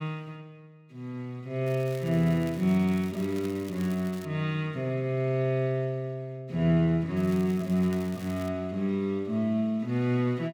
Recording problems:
crackling; from 1.5 to 4.5 s and from 7 to 8.5 s; loose cable, SNR 21 dB

